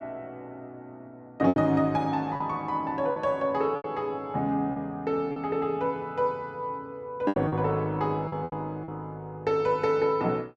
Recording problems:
packet loss; 6% of the sound replaced, filled with repeated pitch periods

